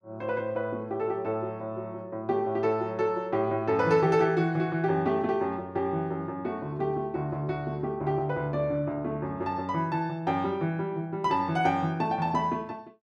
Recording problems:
none

